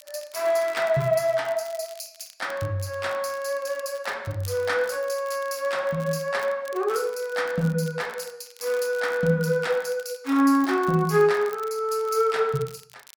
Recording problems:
crackling; vinyl, SNR 23 dB

